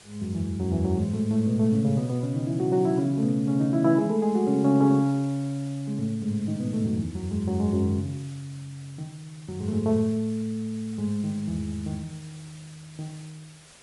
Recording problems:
lossy codec; MP3, log-spectral distance 3 dB
background hiss; slope -1 dB per octave, SNR 24 dB

